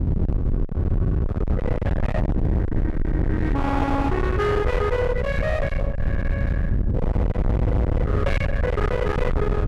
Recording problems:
distortion; hard clipping, signal-to-distortion ratio 7 dB
wind noise; below 190 Hz, SNR -1 dB

